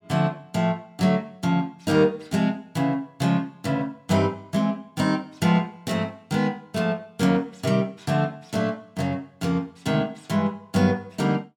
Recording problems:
none

